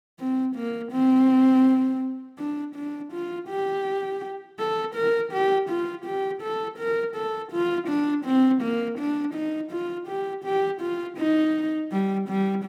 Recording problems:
none

